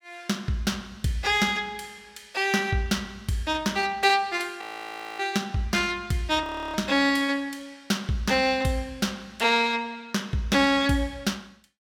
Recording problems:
audio freezing; at 4.5 s for 0.5 s and at 6.5 s

